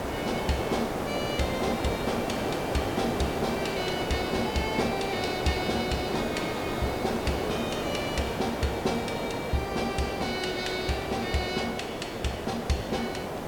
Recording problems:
background hiss; SNR 0 dB

